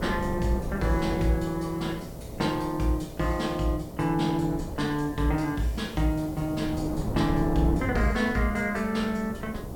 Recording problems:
electrical hum; 60 Hz, harmonics up to 660 Hz, SNR 18 dB
background hiss; slope +2 dB per octave, SNR 24 dB
wind on the microphone; below 330 Hz, SNR 9 dB

